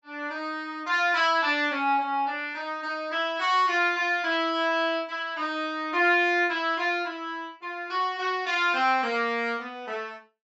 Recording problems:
treble cut off; nothing above 8 kHz

